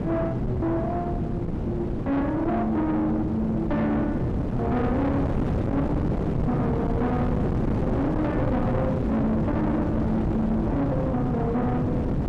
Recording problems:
distorted audio; soft clipping, signal-to-distortion ratio 8 dB
wind noise; below 350 Hz, SNR 1 dB

